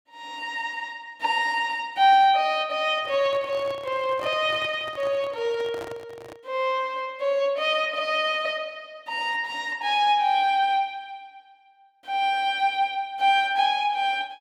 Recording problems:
microphone handling noise; from 3 to 6.5 s; peak -9 dB vs average level

